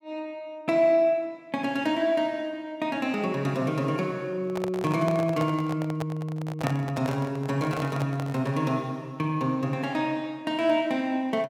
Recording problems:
handling noise; from 4.5 to 8.5 s; peak +1 dB vs average level

